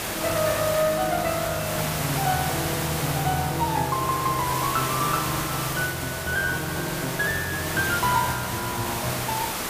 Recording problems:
background hiss; slope -3 dB per octave, SNR 3 dB

